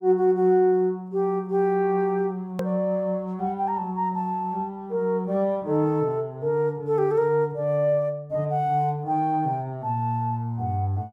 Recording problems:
hard cut with a click; at 2.5 s

